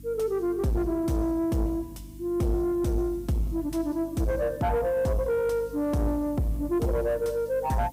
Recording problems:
distorted audio; soft clipping, signal-to-distortion ratio 10 dB
hum; 50 Hz, harmonics up to 300 Hz, SNR 20 dB
hiss; slope +1 dB per octave, SNR 27 dB

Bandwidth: 15.5 kHz